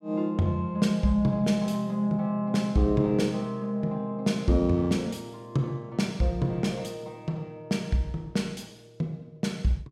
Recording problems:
none

